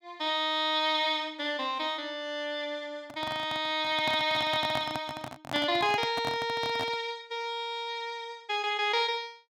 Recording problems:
handling noise; from 3 to 7 s; peak -2 dB vs average level

